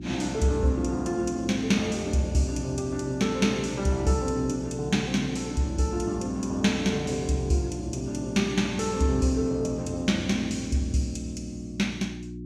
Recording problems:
hum; 60 Hz, harmonics up to 360 Hz, SNR 11 dB

